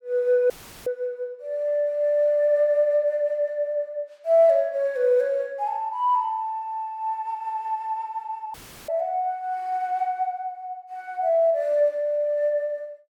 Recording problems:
audio cutting out; at 0.5 s and at 8.5 s; filled with static

